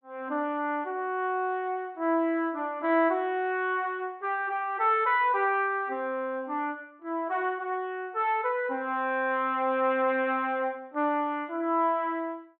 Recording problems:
low-pass filter; nothing above 4 kHz

